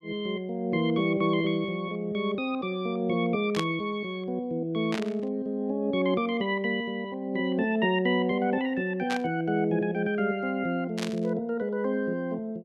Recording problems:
burst of static; 4 times, first at 3.5 s; peak -1 dB vs average level

